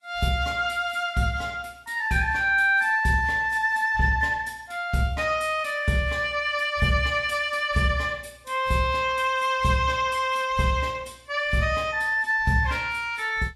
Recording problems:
lossy codec; Vorbis, log-spectral distance 2 dB, nothing above 12.7 kHz

